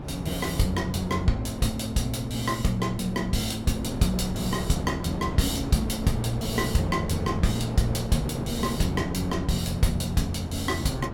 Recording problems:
wind noise; below 460 Hz, SNR 8 dB

